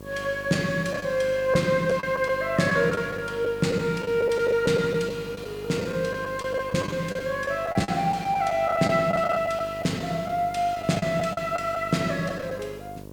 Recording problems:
electrical hum; 50 Hz, harmonics up to 1.1 kHz, SNR 17 dB
hiss; slope -1 dB per octave, SNR 28 dB
lost packets; 8% of the sound replaced, filled with the last packet

